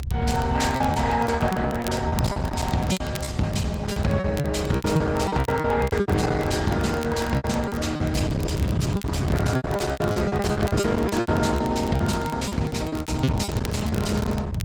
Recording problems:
lossy compression; Opus, log-spectral distance 3 dB, nothing above 18.9 kHz
distorted audio; hard clipping, uneven, signal-to-distortion ratio 11 dB
rumble; below 200 Hz, SNR 5 dB
crackling; vinyl, SNR 19 dB
lost packets; 16% of the sound replaced, filled with repeated pitch periods

